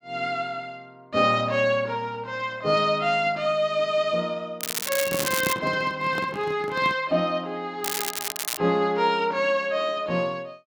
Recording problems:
crackling; at 4.5 s and at 8 s; loose cable, SNR 4 dB
microphone handling noise; from 5 to 7 s; peak -1 dB vs average level

